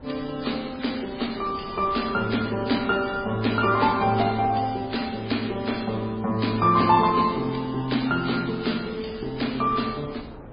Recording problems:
codec artefacts; MP3, then MP3, log-spectral distance 6 dB, nothing above 4.9 kHz
wind on the microphone; below 580 Hz, SNR 20 dB

